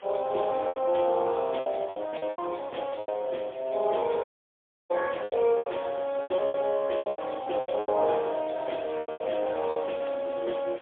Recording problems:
phone line; 320 Hz to 3.4 kHz, AMR-NB, then MP3
background hiss; SNR 23 dB
packet loss; 14% of the sound replaced, filled with repeated pitch periods
audio cutting out; at 4 s for 0.5 s

